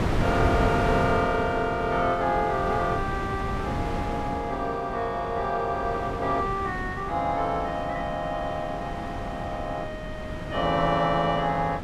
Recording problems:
wind on the microphone; below 620 Hz, SNR 5 dB

